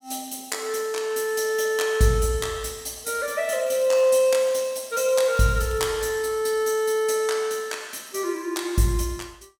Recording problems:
crackle; from 3.5 to 6 s; loose cable, SNR 25 dB

